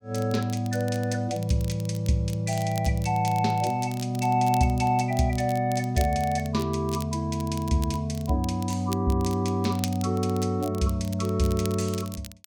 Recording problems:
crackling; vinyl, SNR 18 dB

